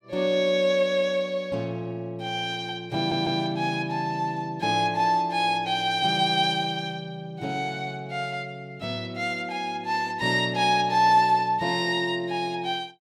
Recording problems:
stutter; at 3 s

